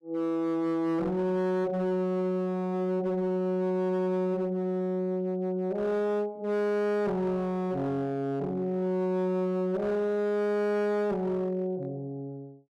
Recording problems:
distorted audio; hard clipping, signal-to-distortion ratio 11 dB

